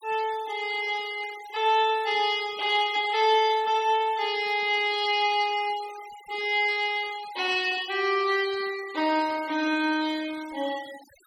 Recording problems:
denoising artefacts; signal-to-artefact ratio 19 dB

